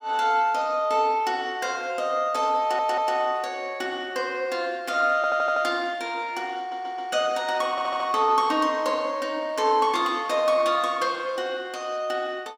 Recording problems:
audio stuttering; 4 times, first at 2.5 s

